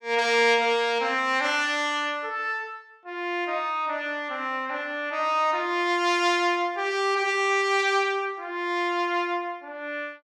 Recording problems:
none

